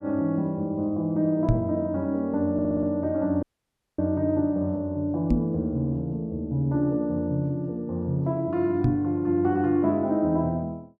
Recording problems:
knock on the microphone; at 1.5 s, at 5.5 s and at 9 s; peak +7 dB vs average level
stutter; at 2.5 s
audio cutting out; at 3.5 s for 0.5 s

